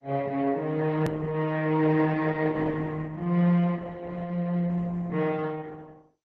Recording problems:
lossy compression; MP2, then Opus, log-spectral distance 3 dB, nothing above 13.1 kHz
edit click; at 1 s

